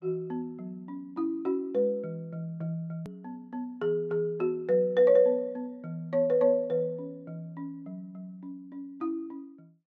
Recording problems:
click at an edit; at 3 s

